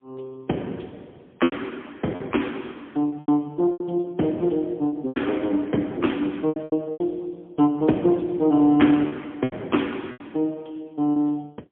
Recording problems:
telephone audio; 110 Hz to 3.3 kHz, AMR-NB, then MP3
lost packets; 8% of the sound replaced, filled with repeated pitch periods

